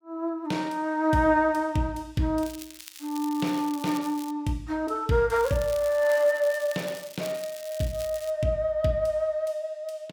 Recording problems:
crackling; from 2.5 to 4.5 s and from 5.5 to 8.5 s; loose cable, SNR 17 dB

